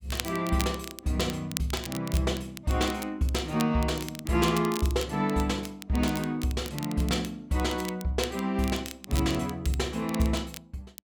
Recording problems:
crackle; vinyl, SNR 12 dB

